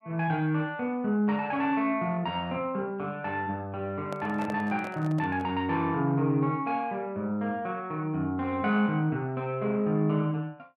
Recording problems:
handling noise; from 4 to 5.5 s; peak -6 dB vs average level

